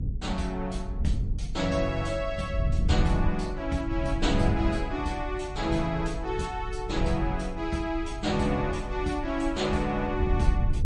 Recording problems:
codec artefacts; MP3, log-spectral distance 2 dB, nothing above 10.4 kHz
rumble; below 90 Hz, SNR 3 dB

